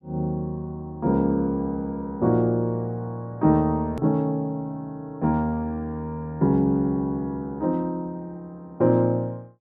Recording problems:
hard cut with a click; at 4 s

